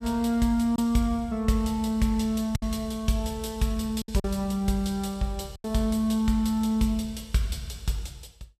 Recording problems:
packet loss; 3% of the sound replaced, filled with silence

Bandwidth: 14.5 kHz